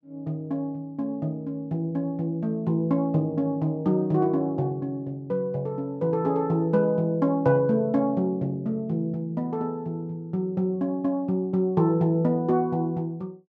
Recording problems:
none

